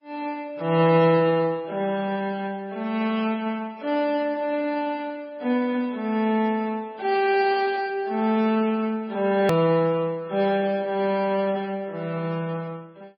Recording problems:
codec artefacts; AAC, then MP3, log-spectral distance 2 dB, nothing above 19.5 kHz
hard cut with a click; at 9.5 s

